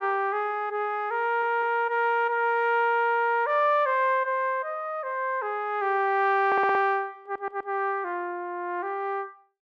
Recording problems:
stutter; at 1 s, at 6.5 s and at 7 s

